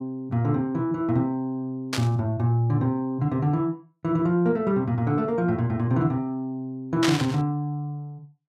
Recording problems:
static burst; at 2 s and at 7 s; peak +4 dB vs average level

